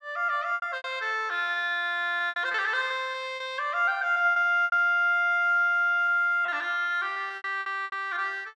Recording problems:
lost packets; 10% of the sound replaced, filled with repeated pitch periods

